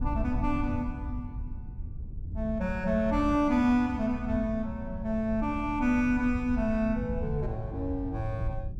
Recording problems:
wind on the microphone; below 98 Hz, SNR 8 dB

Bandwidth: 14.5 kHz